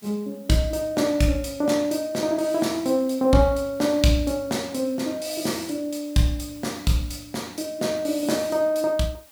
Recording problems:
background hiss; slope 0 dB per octave, SNR 26 dB

